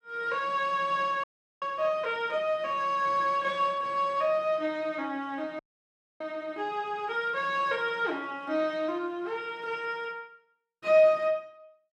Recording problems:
audio freezing; at 1 s and at 5.5 s for 0.5 s

